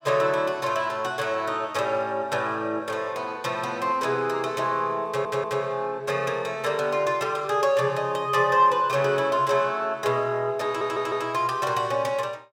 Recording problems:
stutter; at 5 s and at 11 s

